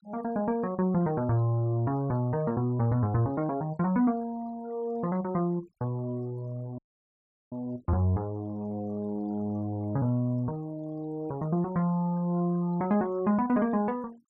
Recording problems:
denoising artefacts; signal-to-artefact ratio 27 dB
dropout; at 7 s for 0.5 s

